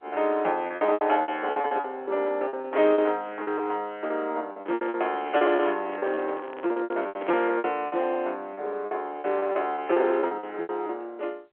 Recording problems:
telephone audio; 320 Hz to 3.6 kHz, G.711
lost packets; 19% of the sound replaced, filled with repeated pitch periods
handling noise; from 4.5 to 7.5 s; peak -6 dB vs average level

